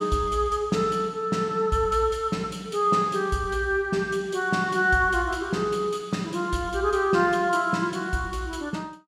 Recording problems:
none

